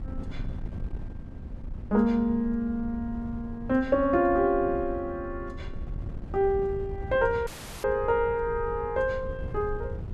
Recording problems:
wind on the microphone; below 110 Hz, SNR 12 dB
audio cutting out; at 7.5 s

